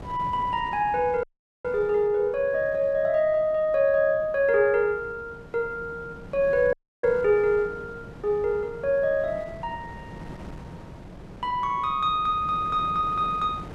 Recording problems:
wind on the microphone; below 490 Hz, SNR 18 dB
dropout; at 1 s and at 6.5 s

